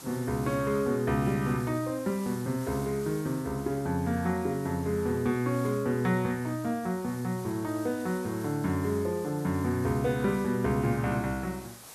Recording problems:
background hiss; SNR 18 dB

